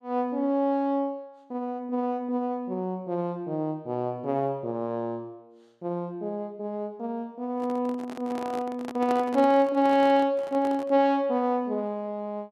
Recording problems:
microphone handling noise; from 7.5 to 11 s; peak -4 dB vs average level

